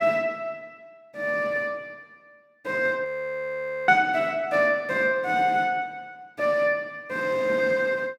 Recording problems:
audio freezing; at 3 s for 1 s

